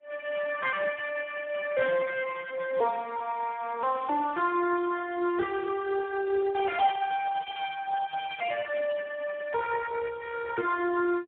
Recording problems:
telephone audio; 300 Hz to 2.8 kHz, Speex

